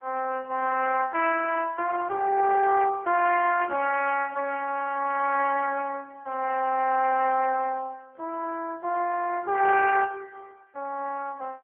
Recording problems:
phone line; 340 Hz to 3.1 kHz, AMR-NB

